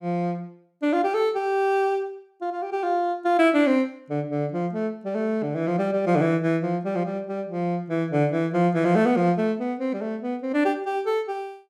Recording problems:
none

